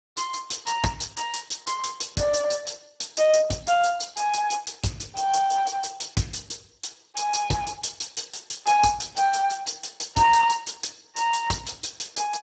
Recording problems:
codec artefacts; Speex, log-spectral distance 10 dB, nothing above 7.6 kHz

